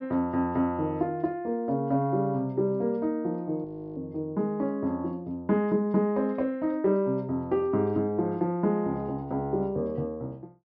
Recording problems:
low-pass filter; nothing above 5.5 kHz
audio freezing; at 3.5 s

